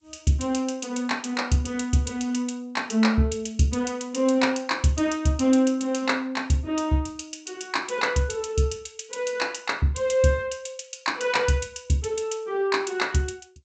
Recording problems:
lossy compression; G.722, log-spectral distance 4 dB, nothing above 7.8 kHz

